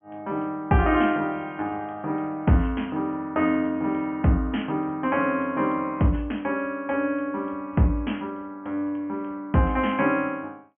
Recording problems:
treble missing; nothing above 3.2 kHz

